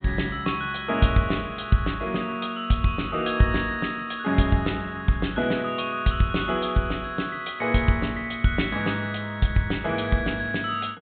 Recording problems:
treble missing; nothing above 4 kHz

